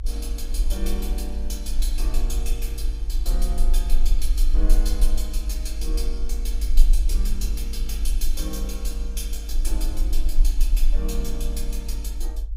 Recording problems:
low-frequency rumble; below 42 Hz, strongest tone 18 Hz, SNR -8 dB

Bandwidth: 15.5 kHz